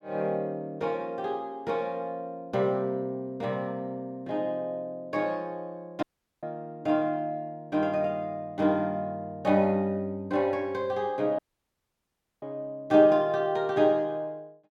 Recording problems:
dropout; at 6 s and at 11 s for 1 s

